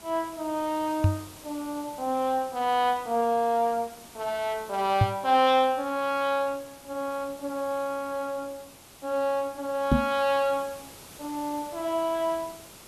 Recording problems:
background hiss; SNR 19 dB
knock on the microphone; at 1 s, at 5 s and at 10 s; peak +8 dB vs average level

